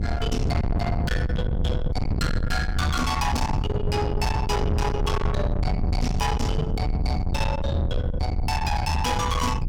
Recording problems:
distorted audio; soft clipping, signal-to-distortion ratio 6 dB
rumble; below 200 Hz, SNR 0 dB
wind noise; below 260 Hz, SNR 1 dB

